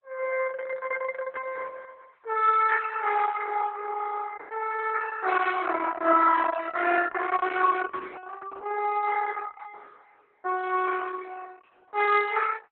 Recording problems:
lossy codec; Opus, log-spectral distance 5 dB, nothing above 3.9 kHz

